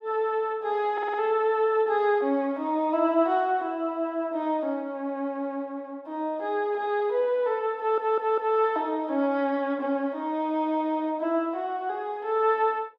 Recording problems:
stutter; at 1 s and at 8 s

